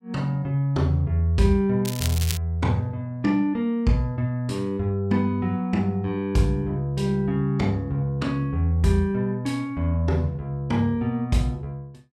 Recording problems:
crackling; at 2 s; loose cable, SNR 8 dB

